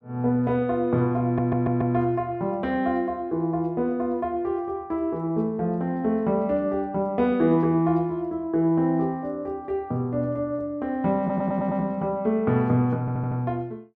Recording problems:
stutter; at 1.5 s, at 11 s and at 13 s

